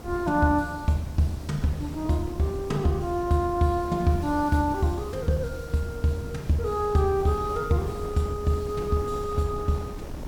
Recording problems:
hiss; SNR 24 dB
wind on the microphone; below 320 Hz, SNR 13 dB

